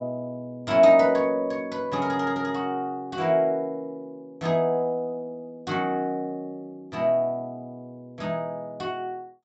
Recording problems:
low-pass filter; nothing above 8 kHz

